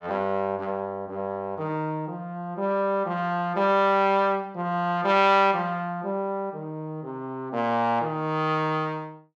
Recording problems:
none

